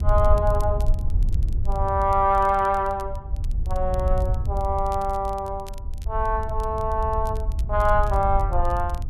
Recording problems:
wind noise; below 74 Hz, SNR 3 dB
crackle; vinyl, SNR 27 dB

